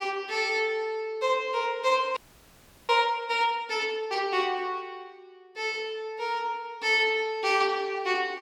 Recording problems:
audio freezing; at 2 s for 0.5 s

